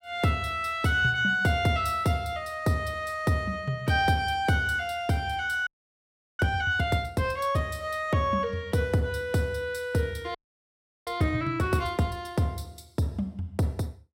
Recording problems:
audio freezing; at 5.5 s for 0.5 s and at 10 s for 0.5 s

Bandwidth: 16 kHz